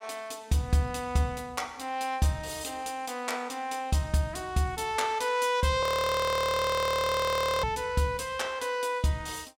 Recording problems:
audio freezing; at 6 s for 2 s

